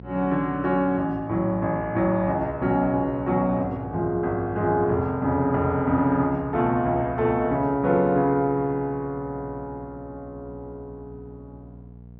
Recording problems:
electrical hum; 60 Hz, harmonics up to 720 Hz, SNR 19 dB

